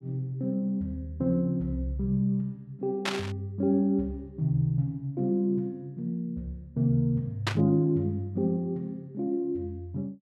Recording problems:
static burst; at 3 s and at 7.5 s; peak +4 dB vs average level

